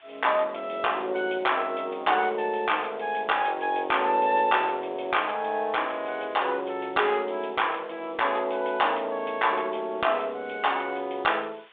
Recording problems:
phone line; 280 Hz to 3.6 kHz, G.726
background hiss; SNR 27 dB

